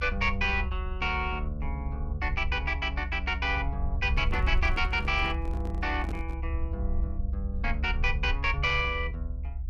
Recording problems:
rumble; below 68 Hz, SNR 3 dB
microphone handling noise; from 4 to 6.5 s; peak -6 dB vs average level

